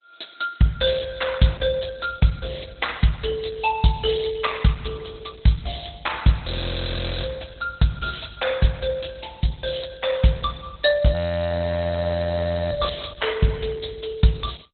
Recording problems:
lossy codec; Opus, log-spectral distance 8 dB, nothing above 4 kHz
audio freezing; at 6.5 s for 1 s and at 11 s for 1.5 s

